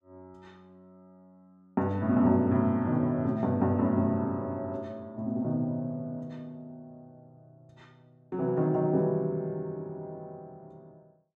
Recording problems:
none

